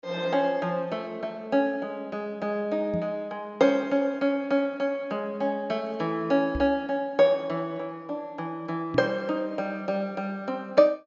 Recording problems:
treble missing; nothing above 8 kHz
microphone thump; at 3 s, at 6.5 s and at 9 s; peak -2 dB vs average level

